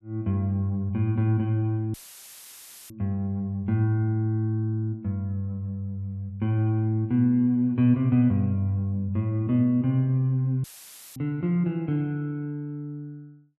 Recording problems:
dropout; at 2 s for 1 s and at 11 s for 0.5 s; filled with static

